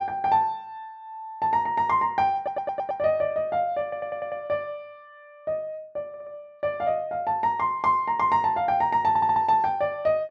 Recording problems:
audio stuttering; 4 times, first at 2.5 s

